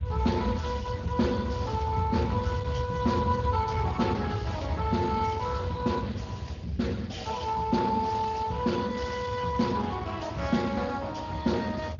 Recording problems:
low-pass filter; nothing above 6.9 kHz
codec artefacts; Opus, then Speex, log-spectral distance 3 dB
low-frequency rumble; below 110 Hz, SNR 5 dB

